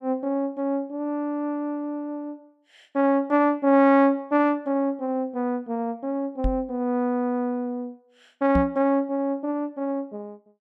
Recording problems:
microphone thump; at 6.5 s and at 8.5 s; peak +2 dB vs average level

